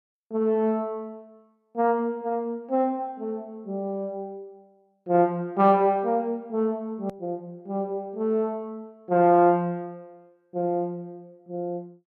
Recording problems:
hard cut with a click; at 7 s

